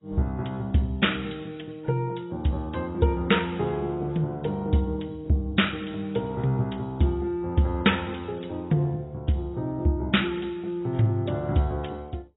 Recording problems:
lossy compression; AAC, log-spectral distance 3 dB, nothing above 3.8 kHz

